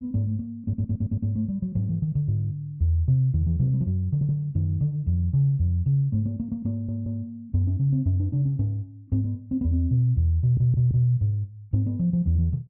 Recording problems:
audio stuttering; 4 times, first at 0.5 s

